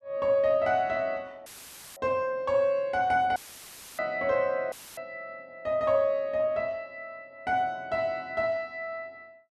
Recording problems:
dropout; at 1.5 s for 0.5 s, at 3.5 s for 0.5 s and at 4.5 s; filled with static

